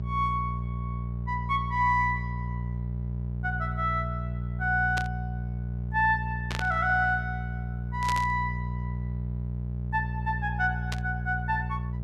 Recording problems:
hum; 60 Hz, harmonics up to 420 Hz, SNR 4 dB
burst of static; 4 times, first at 5 s; peak -1 dB vs average level

